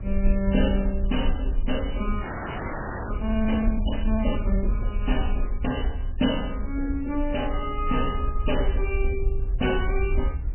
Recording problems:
codec artefacts; MP3, log-spectral distance 5 dB, nothing above 3 kHz
rumble; below 56 Hz, SNR 1 dB
wind noise; below 360 Hz, SNR 20 dB
frozen audio; at 2 s for 1 s

